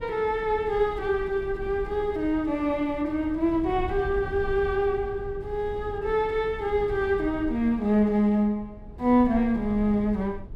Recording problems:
low-frequency rumble; below 100 Hz, SNR 15 dB

